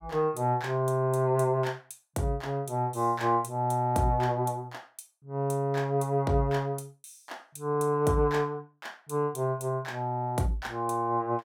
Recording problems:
none

